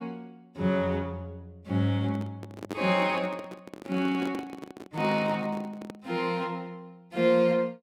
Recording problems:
microphone handling noise; from 2 to 6 s; peak -3 dB vs average level

